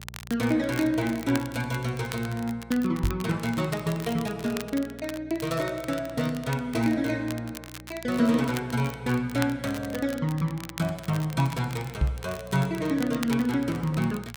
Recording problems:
hum; 60 Hz, harmonics up to 420 Hz, SNR 19 dB
crackling; vinyl, SNR 15 dB
microphone thump; at 3 s and at 12 s; peak +7 dB vs average level

